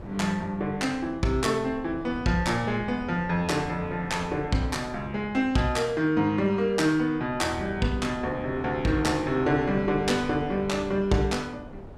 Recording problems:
wind on the microphone; below 410 Hz, SNR 16 dB

